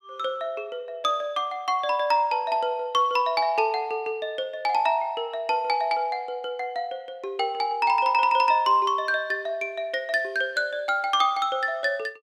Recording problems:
none

